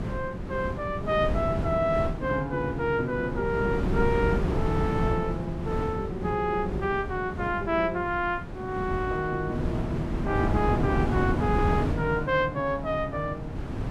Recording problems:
wind noise; below 280 Hz, SNR 3 dB

